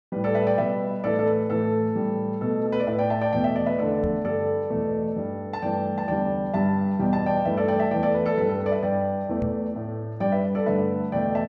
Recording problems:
knock on the microphone; at 4 s and at 9.5 s; peak -2 dB vs average level

